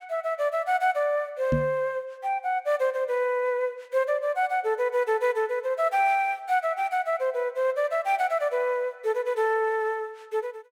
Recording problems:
microphone bump; at 1.5 s; peak +3 dB vs average level

